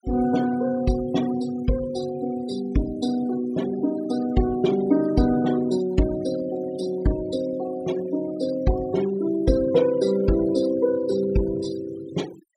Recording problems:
noise reduction artefacts; signal-to-artefact ratio 18 dB

